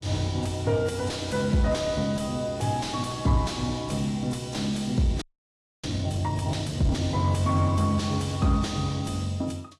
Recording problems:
lossy codec; AAC, log-spectral distance 3 dB, nothing above 11 kHz
distortion; soft clipping, signal-to-distortion ratio 11 dB
audio freezing; at 5 s for 0.5 s

